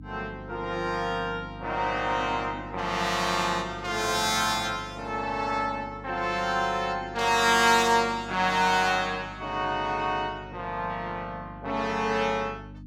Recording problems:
mains hum; 50 Hz, harmonics up to 300 Hz, SNR 18 dB

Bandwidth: 16.5 kHz